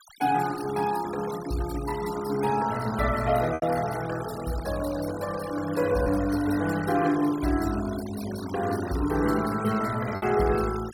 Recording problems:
noise reduction artefacts; signal-to-artefact ratio 14 dB
packet loss; 1.5% of the sound replaced, filled with repeated pitch periods

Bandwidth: 16.5 kHz